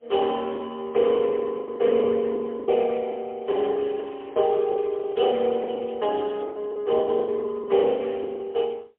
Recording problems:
phone line; 300 Hz to 3.3 kHz, AMR-NB, then MP3
lost packets; 16% of the sound replaced, filled with the last packet
crackle; from 3.5 to 6 s; loose cable, SNR 27 dB

